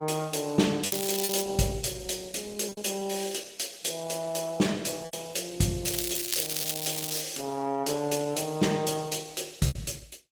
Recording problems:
codec artefacts; Opus, log-spectral distance 7 dB
lost packets; 4% of the sound replaced, filled with repeated pitch periods
crackle; at 1 s and from 6 to 7 s; loose cable, SNR 1 dB

